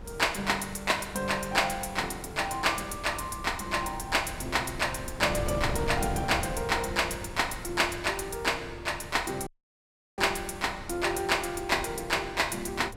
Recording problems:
wind on the microphone; below 320 Hz, SNR 12 dB
audio cutting out; at 9.5 s for 0.5 s

